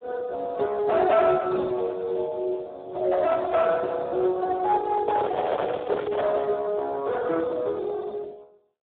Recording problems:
phone line; 340 Hz to 2 kHz, Speex
distortion; soft clipping, signal-to-distortion ratio 14 dB
microphone handling noise; from 5 to 6.5 s; peak +2 dB vs average level

